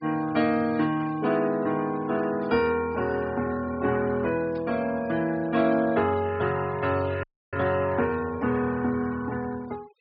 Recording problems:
low-pass filter; nothing above 5.5 kHz
denoising artefacts; signal-to-artefact ratio 21 dB
static burst; at 1 s, at 2.5 s and at 4.5 s; peak -18 dB vs average level
audio cutting out; at 7 s

